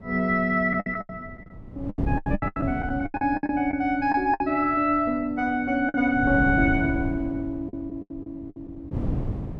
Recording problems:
wind noise; below 210 Hz, SNR 8 dB
lost packets; 12% of the sound replaced, filled with the last packet

